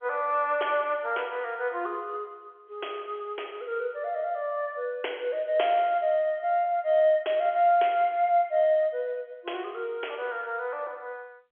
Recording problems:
telephone audio; 320 Hz to 3.4 kHz, G.711

